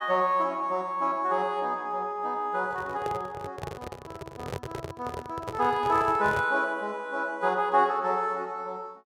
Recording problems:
handling noise; from 2.5 to 6.5 s; peak -3 dB vs average level

